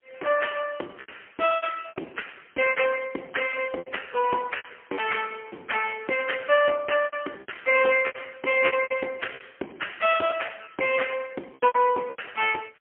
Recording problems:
telephone audio; 300 Hz to 3.2 kHz, AMR-NB, then MP3
lost packets; 12% of the sound replaced, filled with repeated pitch periods

